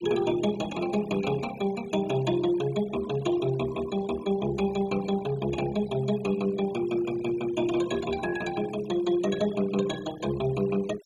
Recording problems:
noise reduction artefacts; signal-to-artefact ratio 17 dB

